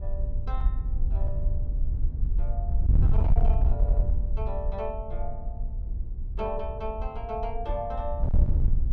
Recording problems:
distorted audio; hard clipping, signal-to-distortion ratio 8 dB
wind on the microphone; below 68 Hz, SNR -8 dB
stutter; at 4 s

